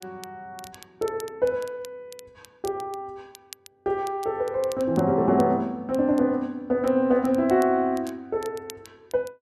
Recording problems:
crackle; vinyl, SNR 23 dB

